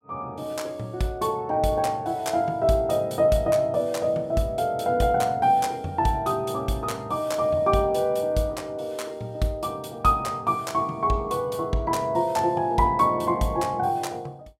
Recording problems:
none

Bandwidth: 16 kHz